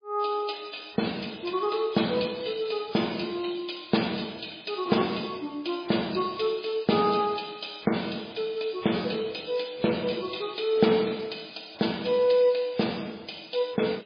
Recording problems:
lossy codec; MP3, log-spectral distance 11 dB

